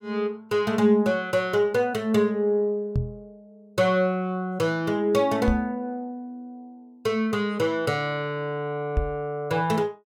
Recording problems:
microphone bump; at 3 s, at 5.5 s and at 9 s; peak +3 dB vs average level

